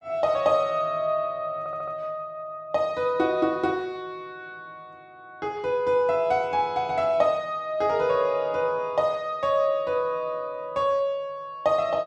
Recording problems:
audio stuttering; at 1.5 s

